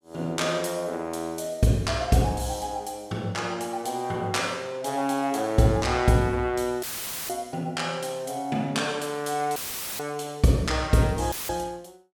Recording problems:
audio cutting out; at 7 s, at 9.5 s and at 11 s; filled with static

